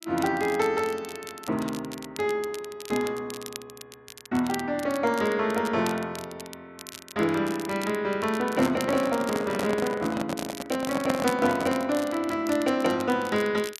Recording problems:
crackling; vinyl, SNR 15 dB
microphone handling noise; from 8.5 to 12 s; peak +3 dB vs average level

